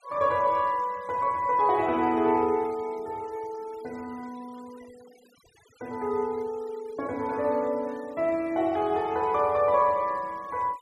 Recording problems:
denoising artefacts; signal-to-artefact ratio 26 dB

